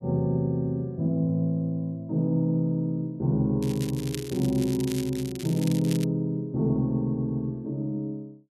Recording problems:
crackle; from 3.5 to 6 s; loose cable, SNR 14 dB

